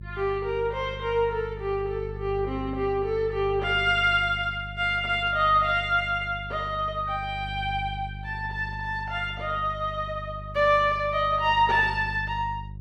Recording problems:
electrical hum; 50 Hz, harmonics up to 350 Hz, SNR 13 dB

